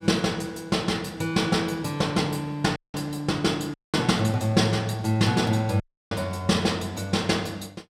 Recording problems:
dropout; at 3 s, at 3.5 s and at 6 s

